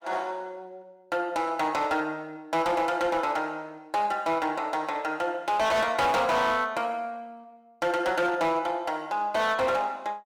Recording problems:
distorted audio; hard clipping, signal-to-distortion ratio 11 dB

